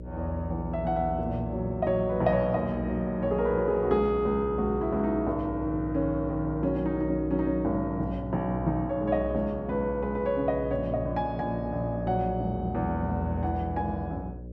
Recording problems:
hum; 60 Hz, harmonics up to 600 Hz, SNR 10 dB

